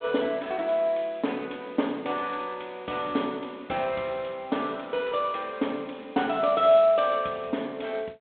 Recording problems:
phone line; 170 Hz to 3.7 kHz, G.726

